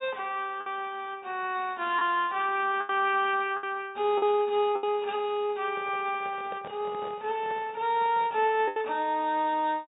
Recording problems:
low-pass filter; nothing above 4 kHz
lost packets; 4% of the sound replaced, filled with the last packet
microphone handling noise; from 5.5 to 8.5 s; peak -9 dB vs average level

